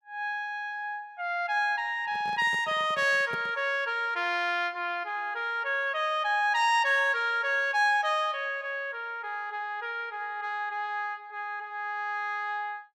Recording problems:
microphone handling noise; from 2 to 3.5 s; peak -8 dB vs average level

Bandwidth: 14.5 kHz